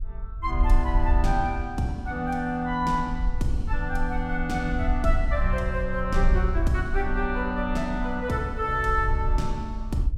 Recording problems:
wind on the microphone; below 56 Hz, SNR 2 dB

